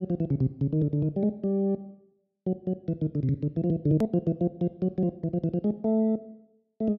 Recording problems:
edit click; at 4 s

